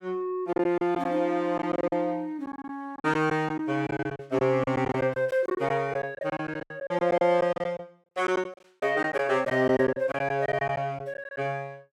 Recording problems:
packet loss; 13% of the sound replaced, filled with silence

